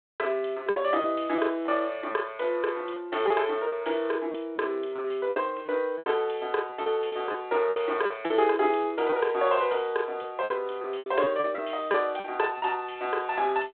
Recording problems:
telephone audio; 300 Hz to 3.6 kHz, G.726
packet loss; 9% of the sound replaced, filled with repeated pitch periods

